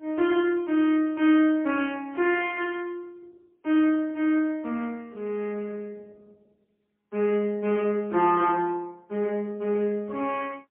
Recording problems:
phone line; 220 Hz to 3.1 kHz, AMR-NB, then MP3

